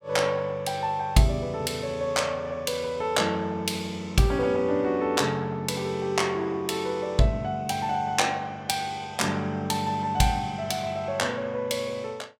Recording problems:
none

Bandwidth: 17 kHz